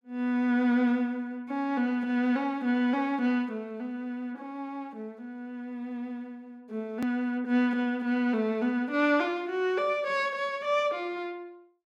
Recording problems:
hard cut with a click; at 7 s

